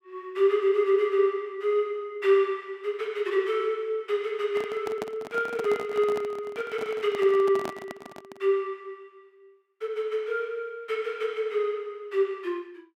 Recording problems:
microphone handling noise; from 4.5 to 8.5 s; peak -4 dB vs average level

